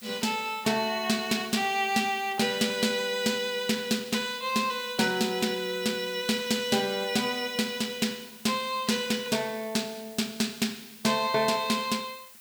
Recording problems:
background hiss; slope +2 dB per octave, SNR 20 dB

